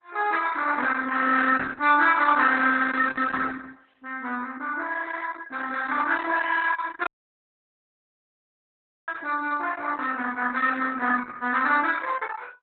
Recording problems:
lossy compression; Opus, log-spectral distance 5 dB, nothing above 4 kHz
dropout; at 7 s for 2 s

